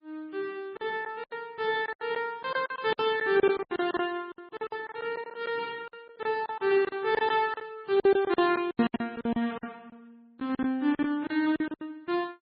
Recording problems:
codec artefacts; MP3, log-spectral distance 2 dB, nothing above 4.9 kHz
lost packets; 16% of the sound replaced, filled with silence

